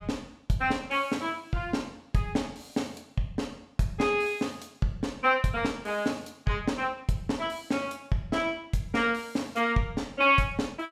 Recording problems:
none

